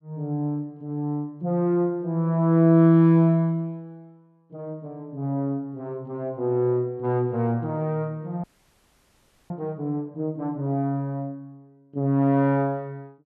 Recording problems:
audio freezing; at 8.5 s for 1 s

